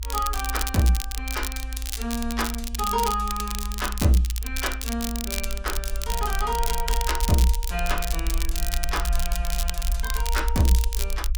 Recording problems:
rumble; below 56 Hz, SNR 4 dB
crackle; vinyl, SNR 5 dB

